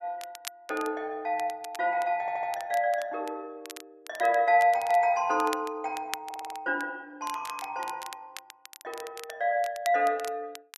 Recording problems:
crackle; vinyl, SNR 17 dB
audio stuttering; at 2 s and at 6.5 s

